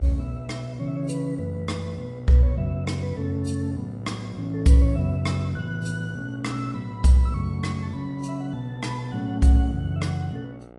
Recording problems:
codec artefacts; AAC, log-spectral distance 2 dB, nothing above 10.4 kHz
electrical hum; 60 Hz, harmonics up to 2.2 kHz, SNR 22 dB

